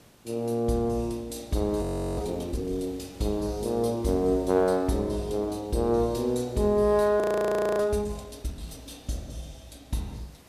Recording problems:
background hiss; slope -4 dB per octave, SNR 25 dB
audio freezing; at 2 s and at 7 s for 0.5 s

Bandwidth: 14.5 kHz